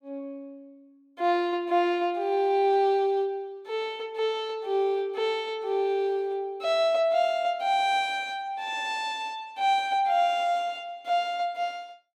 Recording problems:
none

